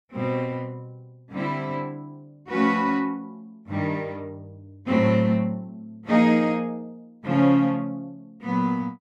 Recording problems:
none

